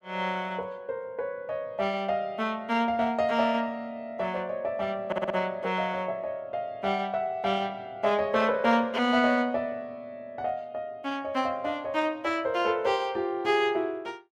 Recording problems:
audio stuttering; at 5 s

